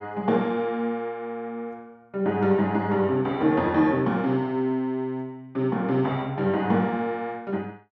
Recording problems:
none

